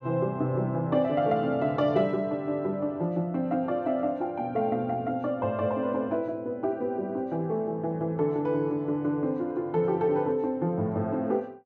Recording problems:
none

